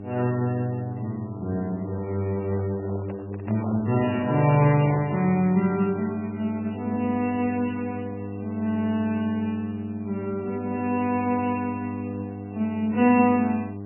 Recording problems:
codec artefacts; AAC, then MP3, log-spectral distance 2 dB, nothing above 2.4 kHz
electrical hum; 50 Hz, harmonics up to 1.1 kHz, SNR 11 dB
microphone handling noise; from 2.5 to 5.5 s; peak -10 dB vs average level

